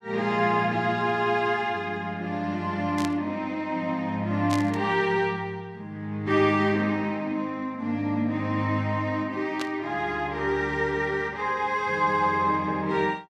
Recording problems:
static burst; at 3 s, at 4.5 s and at 9.5 s; peak -3 dB vs average level

